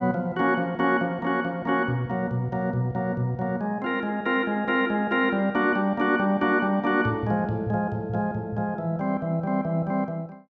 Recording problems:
none

